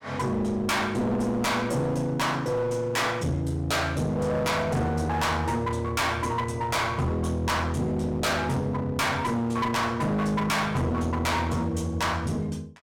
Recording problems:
distortion; hard clipping, uneven, signal-to-distortion ratio 5 dB

